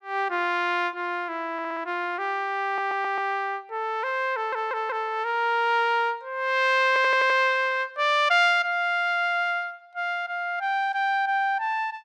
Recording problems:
audio stuttering; 4 times, first at 1.5 s

